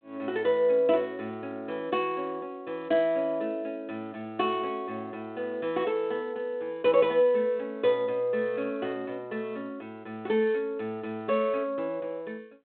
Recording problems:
phone line; 240 Hz to 3.9 kHz, G.726

